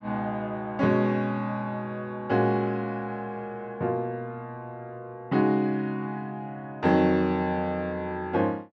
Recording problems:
none

